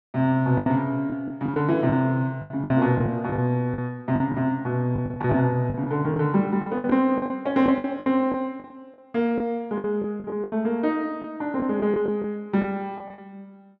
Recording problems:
packet loss; 12% of the sound replaced, filled with the last packet

